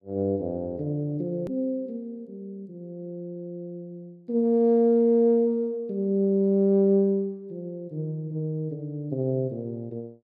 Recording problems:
click at an edit; at 1.5 s

